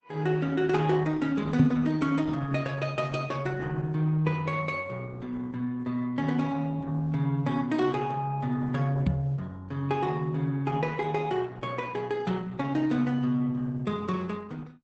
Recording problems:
lossy codec; Opus, log-spectral distance 3 dB, nothing above 8 kHz
microphone bump; at 1.5 s and at 9 s; peak +9 dB vs average level

